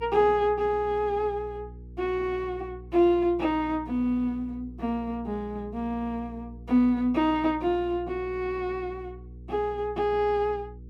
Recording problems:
mains hum; 60 Hz, harmonics up to 480 Hz, SNR 17 dB

